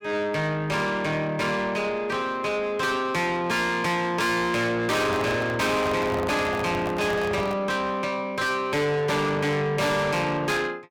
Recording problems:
distorted audio; soft clipping, signal-to-distortion ratio 7 dB
microphone handling noise; from 5 to 7.5 s; peak 0 dB vs average level

